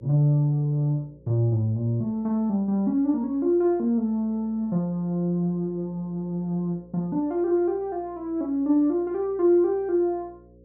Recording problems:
electrical hum; 60 Hz, harmonics up to 540 Hz, SNR 28 dB

